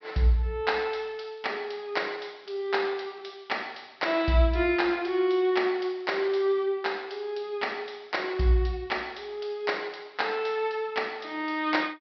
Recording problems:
low-pass filter; nothing above 5.5 kHz

